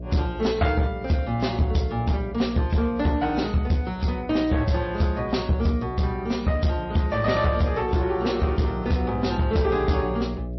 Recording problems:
lossy compression; MP3, log-spectral distance 2 dB, nothing above 5.7 kHz
distortion; hard clipping, uneven, signal-to-distortion ratio 11 dB
electrical hum; 60 Hz, harmonics up to 660 Hz, SNR 12 dB

